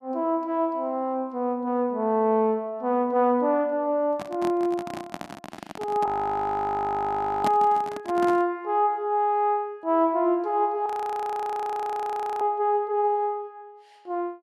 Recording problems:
microphone handling noise; from 4 to 8.5 s; peak 0 dB vs average level
frozen audio; at 6 s for 1.5 s and at 11 s for 1.5 s

